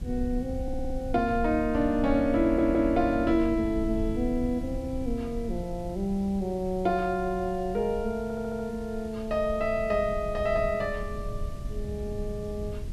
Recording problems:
hiss; SNR 27 dB
rumble; below 88 Hz, SNR 10 dB
stutter; at 0.5 s, at 2.5 s and at 8 s

